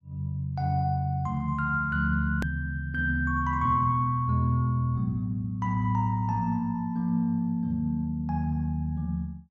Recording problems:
hard cut with a click; at 2.5 s

